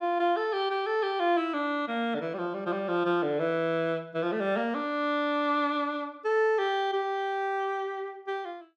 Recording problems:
none

